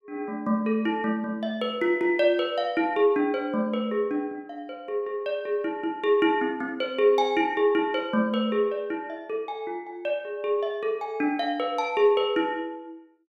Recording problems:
none

